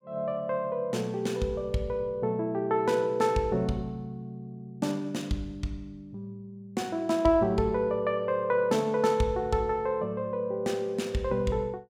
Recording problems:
none

